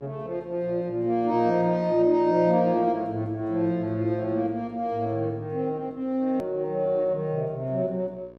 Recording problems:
hum; 60 Hz, harmonics up to 1.7 kHz, SNR 26 dB
click at an edit; at 6.5 s

